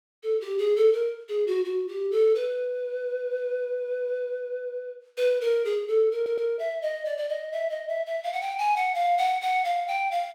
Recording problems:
stutter; at 6 s

